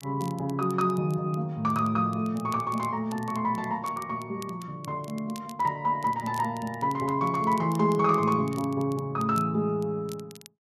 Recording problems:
crackle; vinyl, SNR 22 dB

